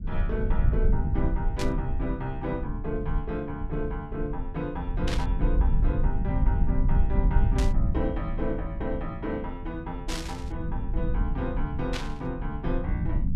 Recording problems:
rumble; below 74 Hz, SNR -3 dB
burst of static; 5 times, first at 1.5 s; peak +4 dB vs average level

